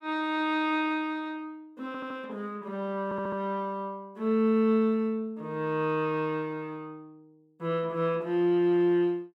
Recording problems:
stutter; at 2 s and at 3 s

